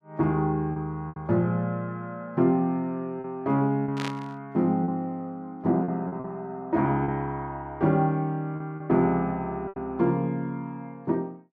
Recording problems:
lost packets; 5% of the sound replaced, filled with repeated pitch periods
burst of static; at 4 s; peak -3 dB vs average level

